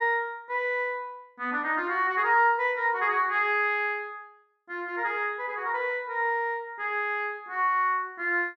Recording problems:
none

